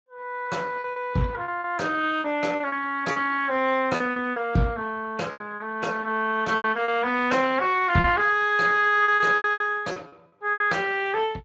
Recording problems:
lossy compression; Speex, log-spectral distance 3 dB, nothing above 7.3 kHz
lost packets; 10% of the sound replaced, filled with repeated pitch periods

